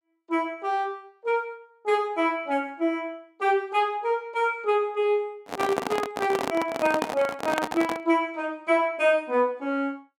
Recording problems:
microphone handling noise; from 5.5 to 8 s; peak +2 dB vs average level

